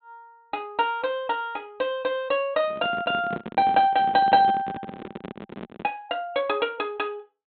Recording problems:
treble missing; nothing above 4 kHz
microphone handling noise; from 2.5 to 6 s; peak -5 dB vs average level

